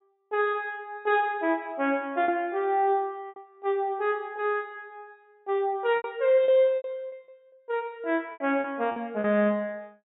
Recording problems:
treble missing; nothing above 4 kHz
lost packets; 6% of the sound replaced, filled with repeated pitch periods

